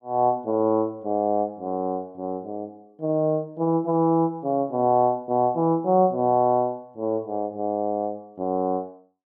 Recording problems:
none

